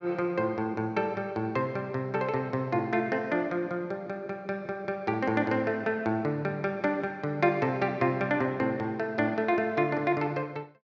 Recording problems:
none

